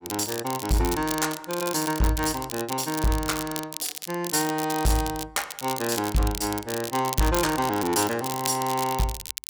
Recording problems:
distorted audio; hard clipping, signal-to-distortion ratio 11 dB
crackling; vinyl, SNR 7 dB

